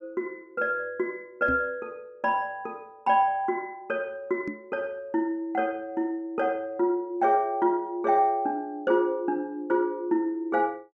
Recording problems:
microphone bump; at 1.5 s and at 4.5 s; peak -1 dB vs average level

